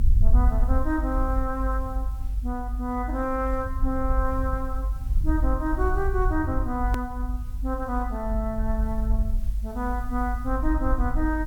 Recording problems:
background hiss; slope -1 dB per octave, SNR 26 dB
rumble; below 58 Hz, SNR -1 dB
click at an edit; at 7 s

